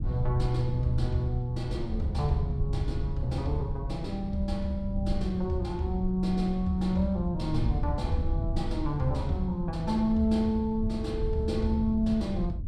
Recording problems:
low-frequency rumble; below 100 Hz, SNR 5 dB

